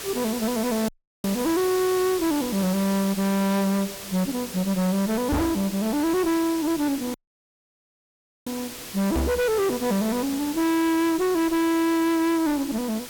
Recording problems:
distortion; hard clipping, uneven, signal-to-distortion ratio 6 dB
background hiss; slope -1 dB per octave, SNR 11 dB
audio cutting out; at 1 s and at 7 s for 1.5 s
microphone thump; at 5.5 s and at 9 s; peak +4 dB vs average level

